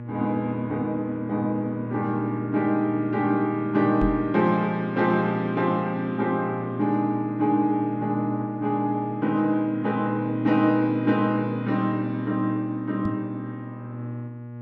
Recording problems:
hum; 60 Hz, harmonics up to 840 Hz, SNR 10 dB
microphone thump; at 4 s and at 13 s; peak +2 dB vs average level

